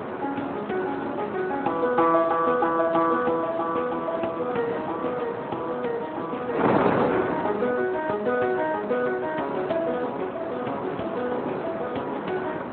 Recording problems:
telephone audio; 260 Hz to 2.7 kHz, Speex
wind on the microphone; below 1.1 kHz, SNR 4 dB

